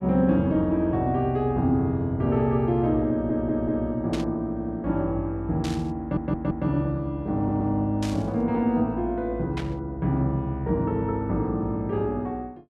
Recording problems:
stutter; 4 times, first at 3 s
burst of static; 4 times, first at 4 s; peak -6 dB vs average level

